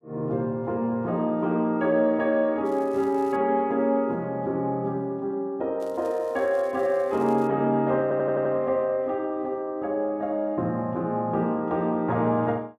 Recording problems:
crackling; at 2.5 s and from 6 to 7.5 s; loose cable, SNR 30 dB
stutter; at 8 s

